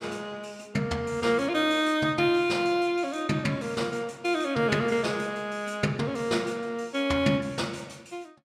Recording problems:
none

